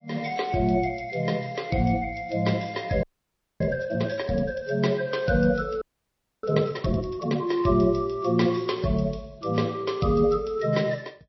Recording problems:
lossy compression; MP3, log-spectral distance 5 dB, nothing above 5.7 kHz
frozen audio; at 3 s for 0.5 s and at 6 s for 0.5 s

